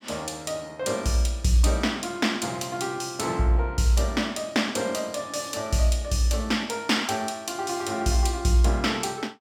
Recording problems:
none

